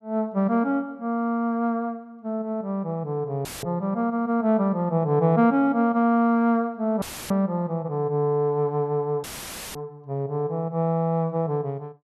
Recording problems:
audio cutting out; at 3.5 s, at 7 s and at 9 s for 0.5 s; filled with static

